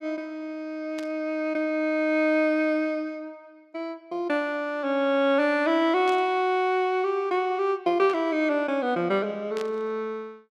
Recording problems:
static burst; 4 times, first at 1 s; peak -10 dB vs average level

